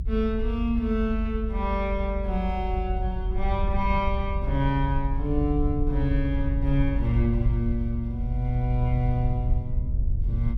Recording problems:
rumble; below 70 Hz, SNR 1 dB

